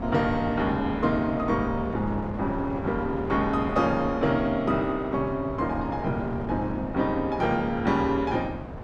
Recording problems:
wind on the microphone; below 580 Hz, SNR 10 dB

